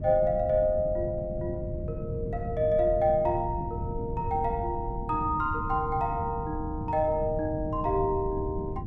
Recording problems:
wind on the microphone; below 160 Hz, SNR 7 dB

